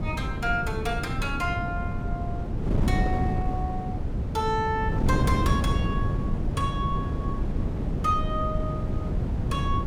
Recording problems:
wind noise; below 200 Hz, SNR -2 dB

